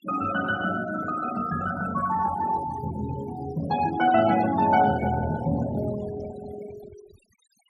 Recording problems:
denoising artefacts; signal-to-artefact ratio 15 dB

